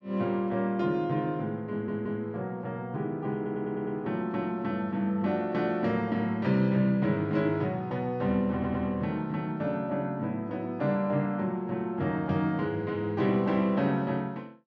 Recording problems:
stutter; at 1.5 s, at 3.5 s and at 8.5 s

